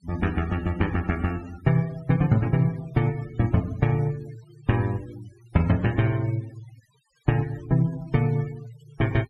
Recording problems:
denoising artefacts; signal-to-artefact ratio 22 dB

